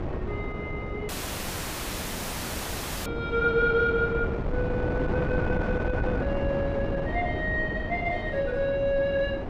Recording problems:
wind on the microphone; below 470 Hz, SNR 3 dB
audio cutting out; at 1 s for 2 s

